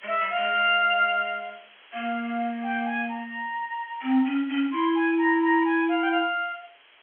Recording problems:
phone line; 240 Hz to 3.4 kHz, G.711
hiss; SNR 27 dB

